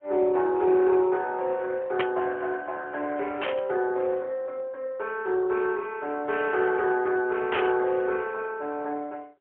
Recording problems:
phone line; 300 Hz to 3.4 kHz, AMR-NB, then MP3
static burst; at 2 s, at 3.5 s and at 7.5 s; peak +1 dB vs average level

